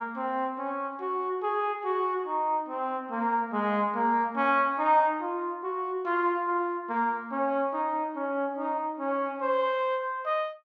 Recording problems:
none

